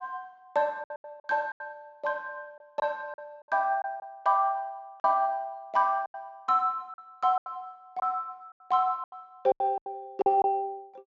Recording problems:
treble cut off; nothing above 7.5 kHz
packet loss; 10% of the sound replaced, filled with silence

